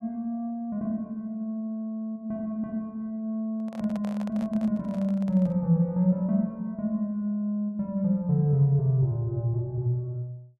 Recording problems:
handling noise; from 3.5 to 5.5 s; peak -11 dB vs average level

